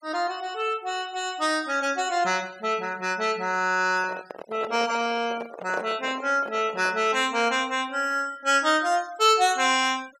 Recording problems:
denoising artefacts; signal-to-artefact ratio 23 dB
handling noise; from 4 to 7 s; peak -4 dB vs average level

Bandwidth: 16.5 kHz